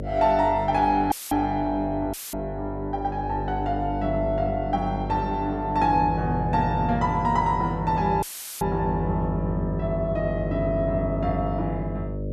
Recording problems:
electrical hum; 50 Hz, harmonics up to 600 Hz, SNR 7 dB
dropout; at 1 s, at 2 s and at 8 s; filled with static

